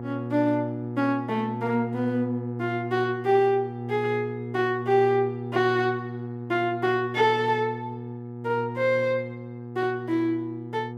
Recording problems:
electrical hum; 60 Hz, harmonics up to 960 Hz, SNR 9 dB

